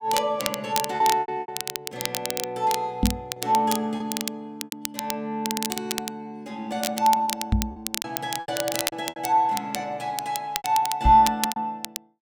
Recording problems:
crackle; vinyl, SNR 6 dB
lost packets; 9% of the sound replaced, filled with repeated pitch periods
microphone thump; at 3 s, at 7.5 s and at 11 s; peak +7 dB vs average level

